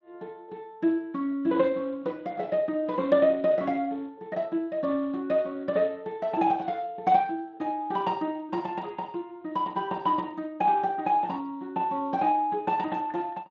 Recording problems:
codec artefacts; Speex, log-spectral distance 2 dB

